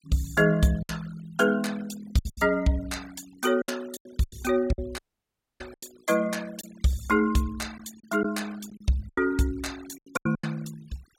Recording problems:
noise reduction artefacts; signal-to-artefact ratio 22 dB
packet loss; 9% of the sound replaced, filled with silence
dropout; at 5 s for 0.5 s

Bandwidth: 16 kHz